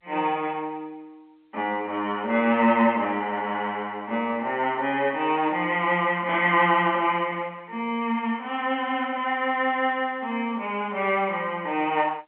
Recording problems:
phone line; 280 Hz to 3.4 kHz, G.711

